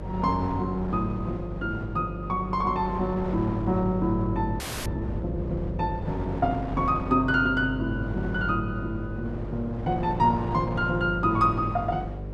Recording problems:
mains hum; 50 Hz, harmonics up to 600 Hz, SNR 8 dB
wind noise; below 710 Hz, SNR 13 dB
frozen audio; at 4.5 s

